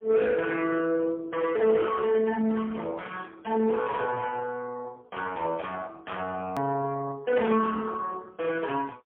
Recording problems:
phone line; 170 Hz to 2.8 kHz, AMR-NB, then MP3
distorted audio; soft clipping, signal-to-distortion ratio 13 dB
hard cut with a click; at 6.5 s

